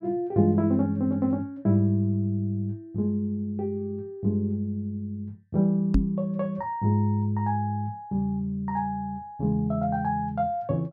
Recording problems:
microphone bump; at 6 s; peak +6 dB vs average level

